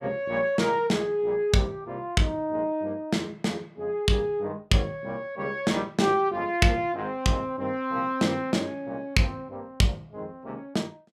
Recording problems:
none

